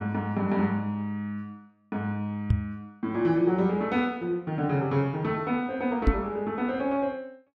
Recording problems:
microphone bump; at 2.5 s and at 6 s; peak +9 dB vs average level

